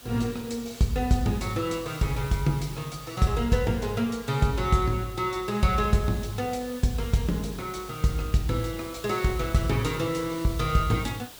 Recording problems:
background hiss; SNR 17 dB

